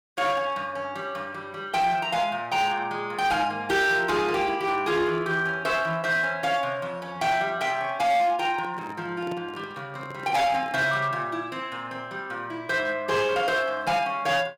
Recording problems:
distorted audio; hard clipping, uneven, signal-to-distortion ratio 12 dB
handling noise; from 8.5 to 11 s; peak -8 dB vs average level

